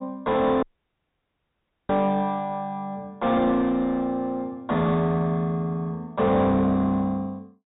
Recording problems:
low-pass filter; nothing above 4 kHz
distorted audio; soft clipping, signal-to-distortion ratio 9 dB
audio cutting out; at 0.5 s for 1.5 s

